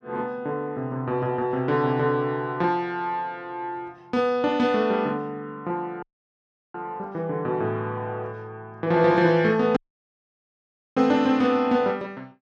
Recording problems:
dropout; at 6 s for 0.5 s and at 10 s for 1 s

